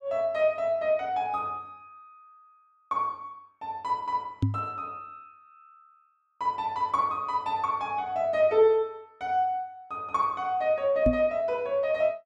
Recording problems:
microphone bump; at 4.5 s and at 11 s; peak +6 dB vs average level

